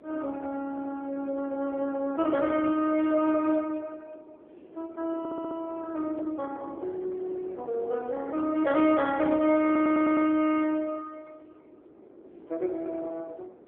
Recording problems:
phone line; 280 Hz to 3.3 kHz, AMR-NB
wind noise; below 470 Hz, SNR 21 dB
stutter; at 5 s and at 9.5 s

